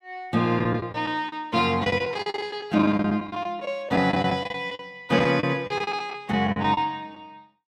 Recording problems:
lost packets; 14% of the sound replaced, filled with the last packet

